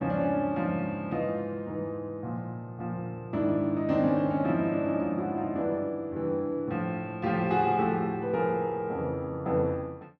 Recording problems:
none

